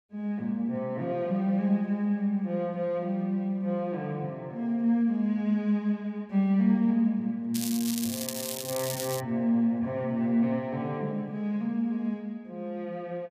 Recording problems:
crackling; from 7.5 to 9 s; loose cable, SNR 6 dB

